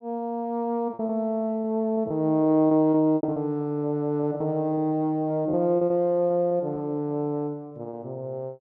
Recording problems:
packet loss; 9% of the sound replaced, filled with repeated pitch periods

